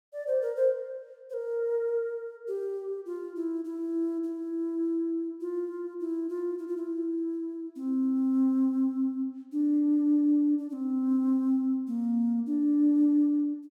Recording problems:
none

